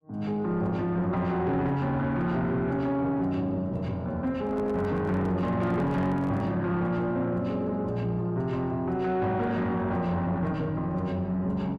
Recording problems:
distortion; soft clipping, signal-to-distortion ratio 11 dB
handling noise; from 4.5 to 6.5 s; peak -8 dB vs average level

